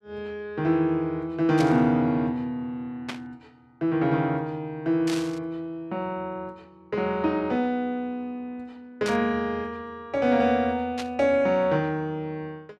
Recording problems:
static burst; 5 times, first at 1.5 s; peak -3 dB vs average level

